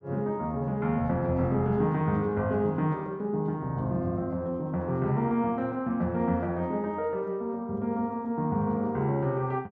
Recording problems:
treble cut off; nothing above 7.6 kHz

